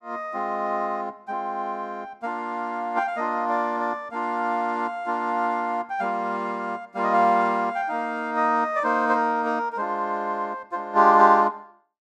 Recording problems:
none

